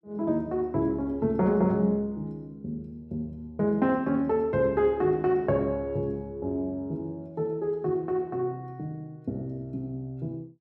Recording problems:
none

